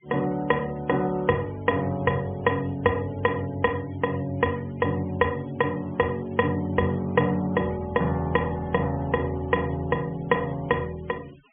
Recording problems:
treble cut off; nothing above 3.3 kHz
noise reduction artefacts; signal-to-artefact ratio 25 dB

